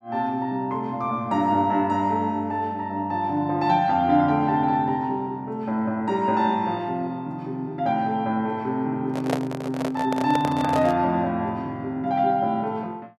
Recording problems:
microphone handling noise; from 9 to 11 s; peak +2 dB vs average level

